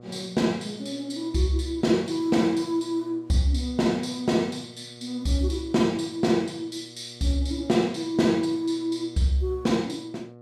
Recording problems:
hum; 60 Hz, harmonics up to 1.3 kHz, SNR 22 dB

